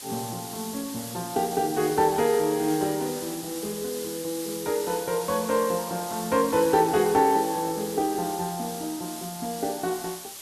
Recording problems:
lossy codec; Opus, log-spectral distance 2 dB, nothing above 10.7 kHz
background hiss; slope +1 dB per octave, SNR 10 dB

